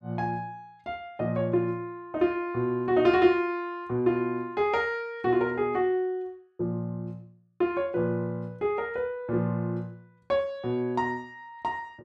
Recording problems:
none

